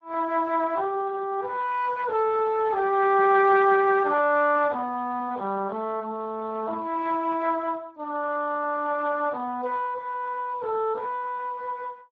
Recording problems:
lossy compression; Speex, log-spectral distance 3 dB

